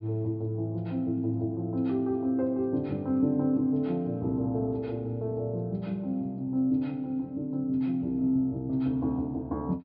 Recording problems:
treble missing; nothing above 5.3 kHz

